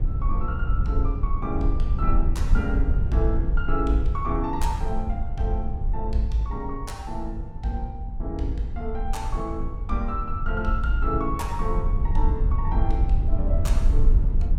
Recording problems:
low-frequency rumble; below 62 Hz, SNR -3 dB

